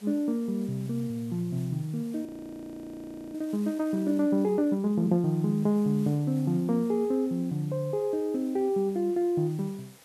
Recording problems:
hiss; slope -2 dB per octave, SNR 26 dB
audio freezing; at 2.5 s for 1 s

